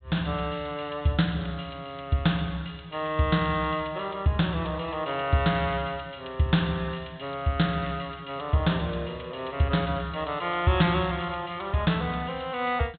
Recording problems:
treble cut off; nothing above 4 kHz

